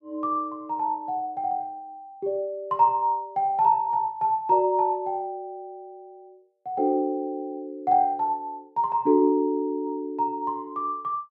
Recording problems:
none

